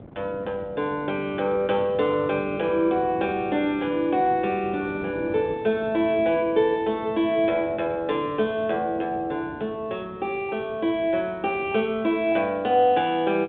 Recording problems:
phone line; 190 Hz to 3.7 kHz, G.726
wind noise; below 480 Hz, SNR 18 dB

